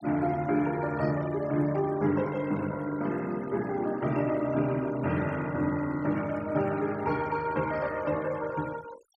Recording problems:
noise reduction artefacts; signal-to-artefact ratio 19 dB

